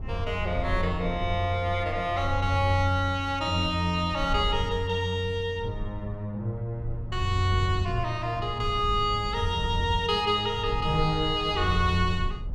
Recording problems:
rumble; below 80 Hz, SNR 10 dB

